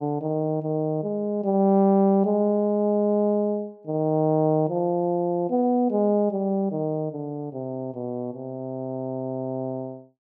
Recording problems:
none

